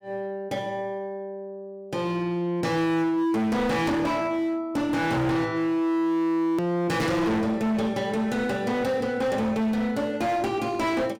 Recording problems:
distorted audio; hard clipping, signal-to-distortion ratio 8 dB
edit click; at 6.5 s

